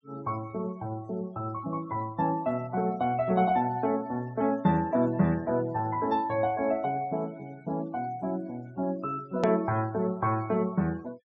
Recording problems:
low-pass filter; nothing above 8 kHz
noise reduction artefacts; signal-to-artefact ratio 24 dB
edit click; at 9.5 s

